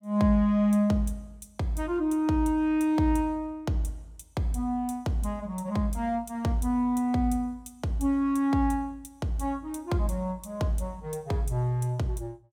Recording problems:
none

